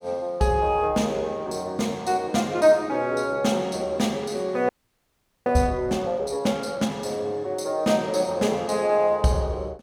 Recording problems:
frozen audio; at 4.5 s for 1 s

